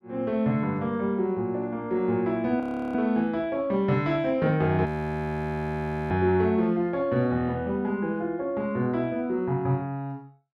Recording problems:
audio freezing; at 2.5 s and at 5 s for 1 s

